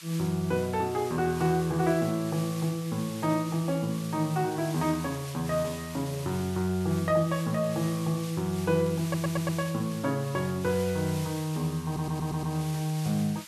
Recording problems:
background hiss; SNR 14 dB
audio stuttering; at 9 s and at 12 s

